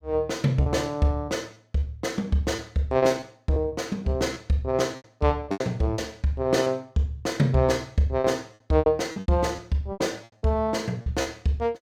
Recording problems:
lost packets; 10% of the sound replaced, filled with repeated pitch periods

